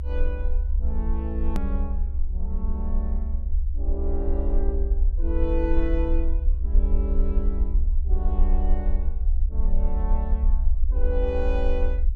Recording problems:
rumble; below 62 Hz, strongest tone 24 Hz, SNR -7 dB
click at an edit; at 1.5 s

